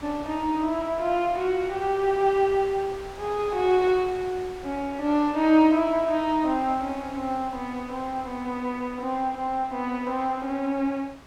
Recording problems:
wind on the microphone; below 2 kHz, SNR 19 dB

